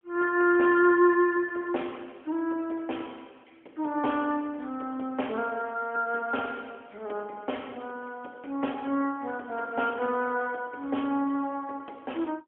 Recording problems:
telephone audio; 260 Hz to 3.3 kHz, AMR-NB, then MP3

